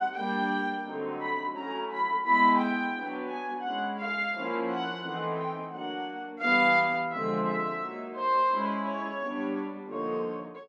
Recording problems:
none

